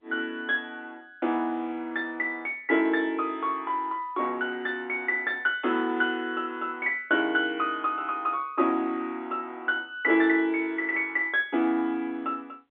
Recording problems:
telephone audio; 240 Hz to 3.6 kHz, G.711

